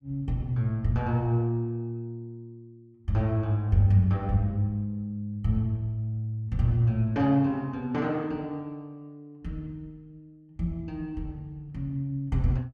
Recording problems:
none

